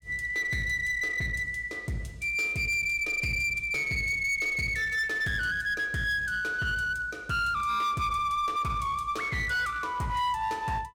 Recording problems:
distorted audio; hard clipping, uneven, signal-to-distortion ratio 11 dB

